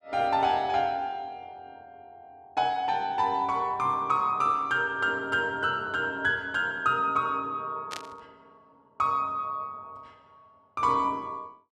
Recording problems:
static burst; at 8 s; peak -6 dB vs average level

